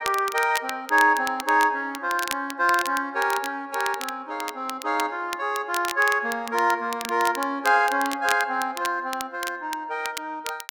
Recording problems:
crackling; vinyl, SNR 12 dB

